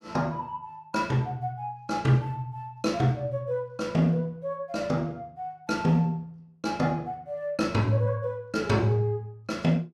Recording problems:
none

